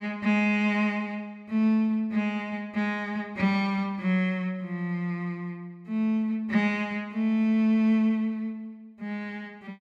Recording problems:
none

